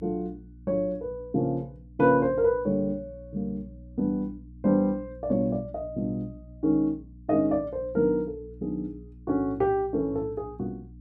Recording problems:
electrical hum; 60 Hz, harmonics up to 300 Hz, SNR 20 dB

